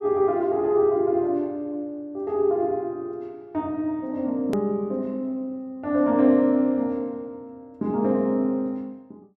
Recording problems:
hard cut with a click; at 4.5 s

